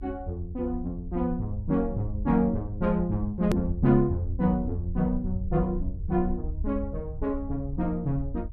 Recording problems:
rumble; below 78 Hz, SNR 8 dB
hard cut with a click; at 3.5 s

